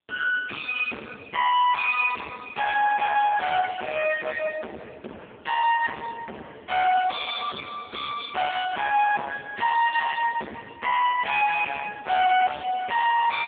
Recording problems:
phone line; 450 Hz to 3 kHz, AMR-NB
distorted audio; hard clipping, signal-to-distortion ratio 6 dB

